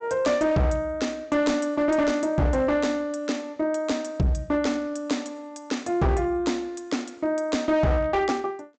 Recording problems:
treble cut off; nothing above 8 kHz
distorted audio; hard clipping, signal-to-distortion ratio 10 dB

